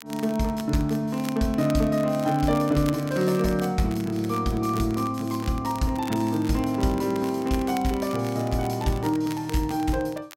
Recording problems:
crackle; vinyl, SNR 18 dB

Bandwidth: 16 kHz